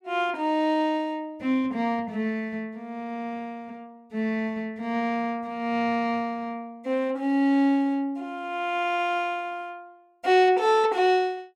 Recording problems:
none

